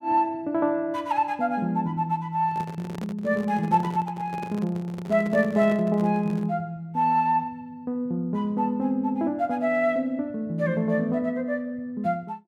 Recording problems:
microphone handling noise; from 2.5 to 6.5 s; peak -7 dB vs average level

